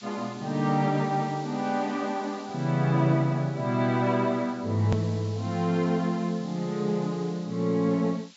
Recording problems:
treble cut off; nothing above 8 kHz
hiss; SNR 22 dB
edit click; at 5 s

